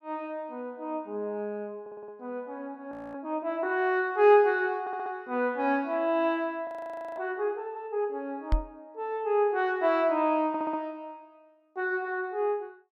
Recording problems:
stutter; at 2 s, at 5 s and at 10 s
audio freezing; at 3 s and at 6.5 s for 0.5 s
microphone thump; at 8.5 s; peak +5 dB vs average level

